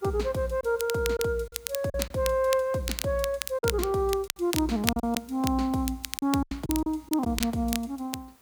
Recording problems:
hiss; slope -3 dB per octave, SNR 30 dB
crackling; vinyl, SNR 7 dB
packet loss; 7% of the sound replaced, filled with silence

